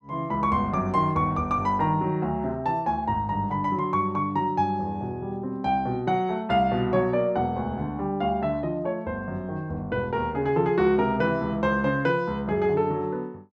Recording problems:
none

